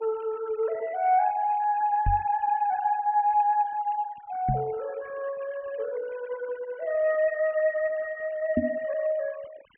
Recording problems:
low-pass filter; nothing above 3.1 kHz
denoising artefacts; signal-to-artefact ratio 22 dB
knock on the microphone; at 2 s, at 4.5 s and at 8.5 s; peak +5 dB vs average level

